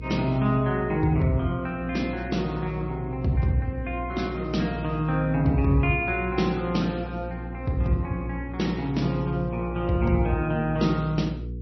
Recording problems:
codec artefacts; MP3, then MP3, log-spectral distance 2 dB, nothing above 5.8 kHz
hum; 60 Hz, harmonics up to 480 Hz, SNR 10 dB

